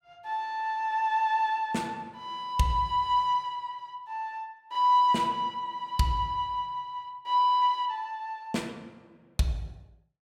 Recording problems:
none

